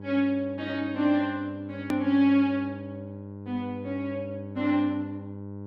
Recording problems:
hum; 50 Hz, harmonics up to 1 kHz, SNR 13 dB
edit click; at 2 s

